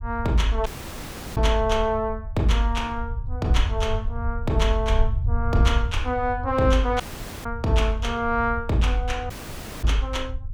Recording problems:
rumble; below 82 Hz, SNR 6 dB
audio cutting out; at 0.5 s for 0.5 s, at 7 s and at 9.5 s for 0.5 s

